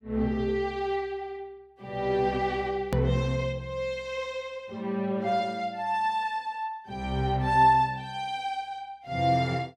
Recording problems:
click at an edit; at 3 s

